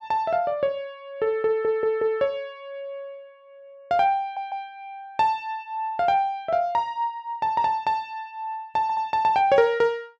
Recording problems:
audio stuttering; at 1.5 s, at 4 s and at 9 s

